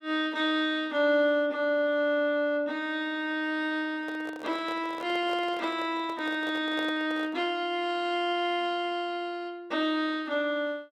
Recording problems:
microphone handling noise; from 4 to 7.5 s; peak -6 dB vs average level

